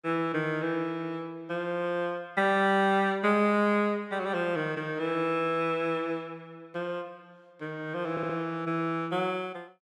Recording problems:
stutter; at 8 s

